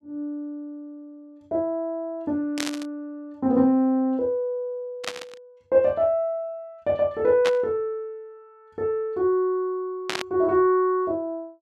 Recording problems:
static burst; 4 times, first at 2.5 s; peak +1 dB vs average level

